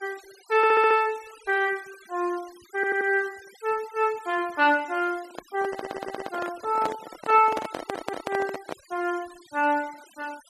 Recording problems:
denoising artefacts; signal-to-artefact ratio 21 dB
audio stuttering; 4 times, first at 0.5 s
microphone handling noise; from 5 to 9 s; peak -1 dB vs average level

